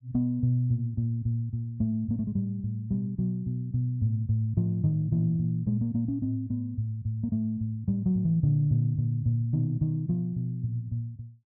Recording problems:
none

